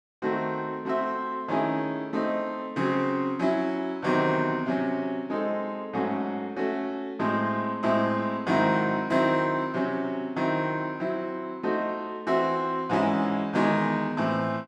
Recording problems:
none

